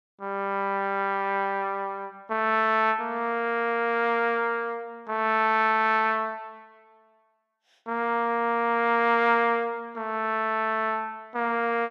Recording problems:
none

